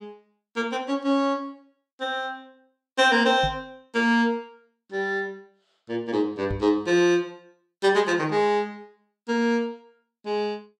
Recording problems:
microphone thump; at 3.5 s and at 6.5 s; peak -4 dB vs average level

